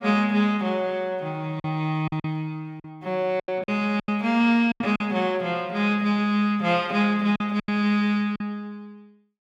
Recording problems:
lost packets; 7% of the sound replaced, filled with silence

